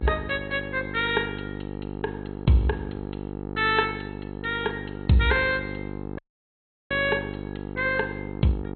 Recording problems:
codec artefacts; MP2, log-spectral distance 7 dB, nothing above 4 kHz
hum; 50 Hz, harmonics up to 1.4 kHz, SNR 9 dB
dropout; at 6 s for 0.5 s

